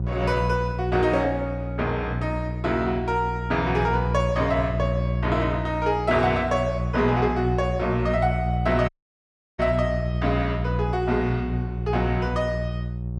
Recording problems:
electrical hum; 60 Hz, harmonics up to 540 Hz, SNR 4 dB
audio cutting out; at 9 s for 0.5 s

